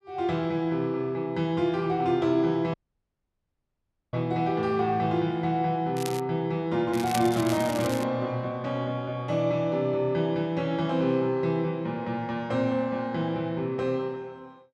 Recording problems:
dropout; at 2.5 s for 1.5 s
crackling; at 6 s and from 7 to 8 s; loose cable, SNR 12 dB

